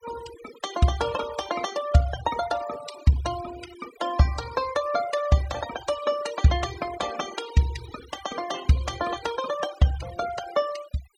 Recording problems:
denoising artefacts; signal-to-artefact ratio 13 dB

